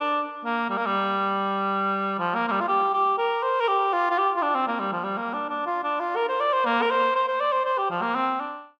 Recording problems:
none

